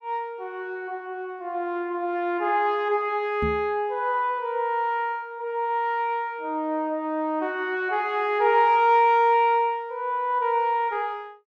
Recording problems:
microphone thump; at 3.5 s; peak -2 dB vs average level

